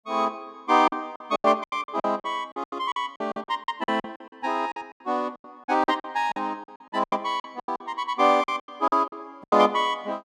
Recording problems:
lost packets; 18% of the sound replaced, filled with silence

